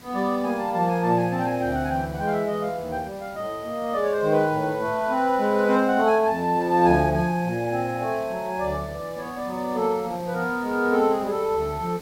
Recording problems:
hiss; slope -4 dB per octave, SNR 21 dB

